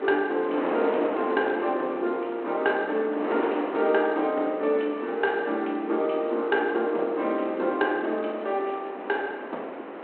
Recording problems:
phone line; 240 Hz to 3.8 kHz, G.726
wind on the microphone; below 1 kHz, SNR 8 dB

